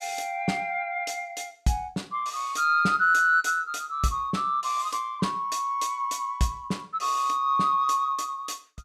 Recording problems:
none

